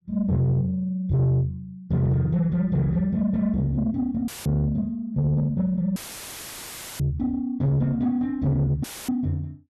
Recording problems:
distorted audio; soft clipping, signal-to-distortion ratio 11 dB
audio cutting out; at 4.5 s, at 6 s for 1 s and at 9 s; filled with static

